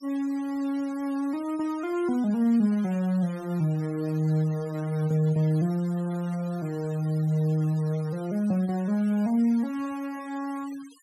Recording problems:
denoising artefacts; signal-to-artefact ratio 22 dB

